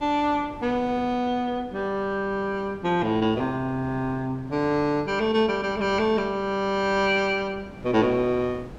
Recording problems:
wind on the microphone; below 520 Hz, SNR 19 dB

